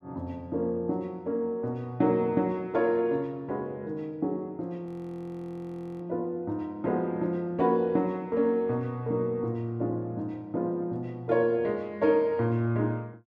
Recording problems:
frozen audio; at 5 s for 1 s

